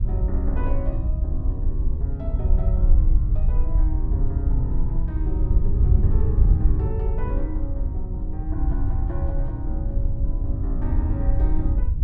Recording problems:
low-frequency rumble; below 62 Hz, SNR -8 dB
wind on the microphone; below 90 Hz, SNR -6 dB

